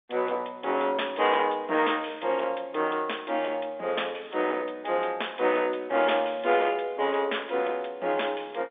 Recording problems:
telephone audio; 320 Hz to 3.6 kHz, G.711
distorted audio; soft clipping, signal-to-distortion ratio 12 dB

